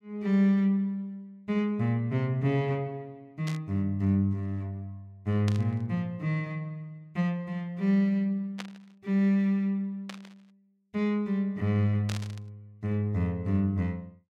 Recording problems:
static burst; 5 times, first at 3.5 s; peak -6 dB vs average level

